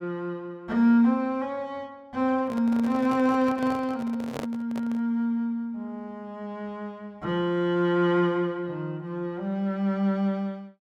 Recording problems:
microphone handling noise; from 2.5 to 5 s; peak -4 dB vs average level

